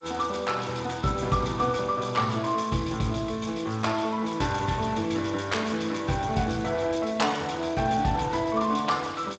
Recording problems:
codec artefacts; Speex, then G.722, log-spectral distance 8 dB, nothing above 7.3 kHz

